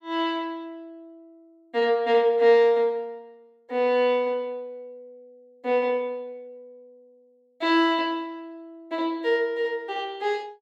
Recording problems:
none

